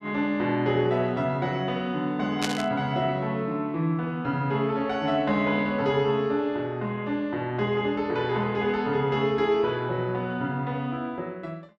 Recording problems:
static burst; at 2.5 s; peak +1 dB vs average level

